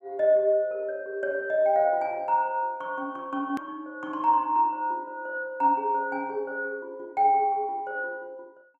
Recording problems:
hard cut with a click; at 3.5 s

